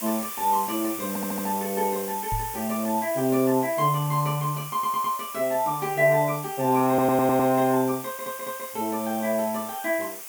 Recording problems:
hiss; SNR 10 dB
stutter; 4 times, first at 1 s
microphone bump; at 2.5 s; peak -4 dB vs average level

